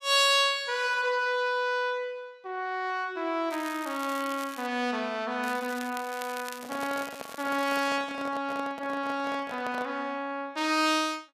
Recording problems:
crackle; from 3.5 to 4.5 s and from 5.5 to 8 s; loose cable, SNR 15 dB
microphone handling noise; from 6.5 to 10 s; peak -7 dB vs average level

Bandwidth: 14.5 kHz